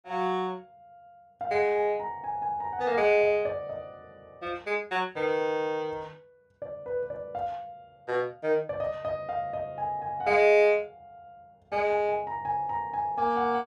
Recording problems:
none

